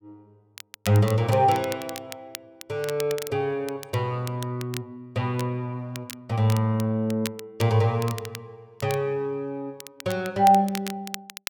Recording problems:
crackling; vinyl, SNR 15 dB

